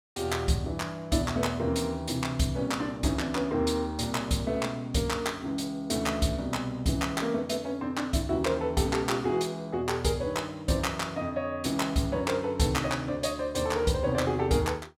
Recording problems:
none

